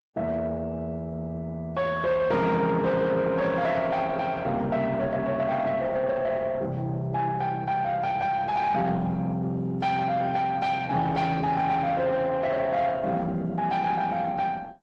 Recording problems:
lossy compression; Opus, then AAC, log-spectral distance 2 dB
distortion; soft clipping, signal-to-distortion ratio 12 dB

